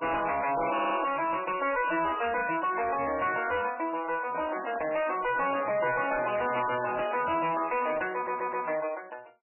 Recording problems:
codec artefacts; MP3, log-spectral distance 6 dB, nothing above 2.9 kHz
distorted audio; hard clipping, uneven, signal-to-distortion ratio 7 dB
audio stuttering; at 0.5 s and at 8 s
microphone handling noise; from 4 to 7.5 s; peak -8 dB vs average level

